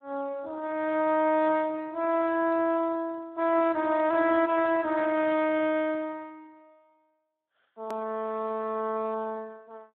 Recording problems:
telephone audio; 240 Hz to 3.6 kHz, Speex
click at an edit; at 8 s

